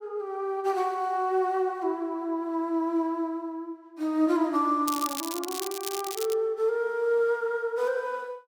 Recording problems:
crackle; from 5 to 6.5 s; loose cable, SNR 7 dB

